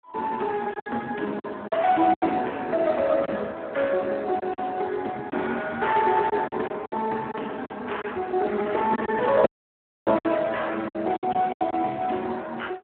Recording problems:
phone line; 190 Hz to 3.3 kHz, Speex
lost packets; 8% of the sound replaced, filled with silence
dropout; at 9.5 s for 0.5 s

